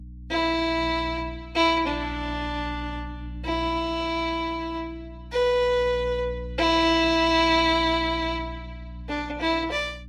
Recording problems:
lossy codec; Vorbis, log-spectral distance 2 dB, nothing above 14.7 kHz
mains hum; 60 Hz, harmonics up to 300 Hz, SNR 14 dB

